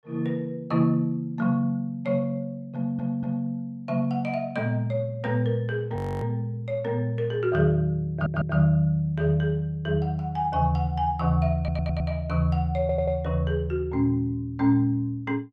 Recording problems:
stutter; 4 times, first at 3 s
audio freezing; at 6 s

